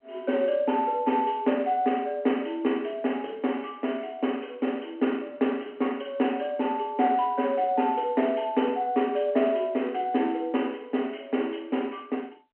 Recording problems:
telephone audio; 220 Hz to 3.2 kHz, G.711

